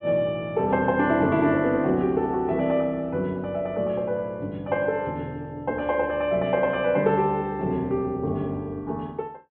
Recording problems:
treble cut off; nothing above 4 kHz

